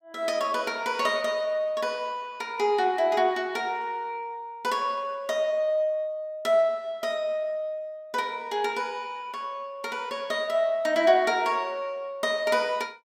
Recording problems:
none

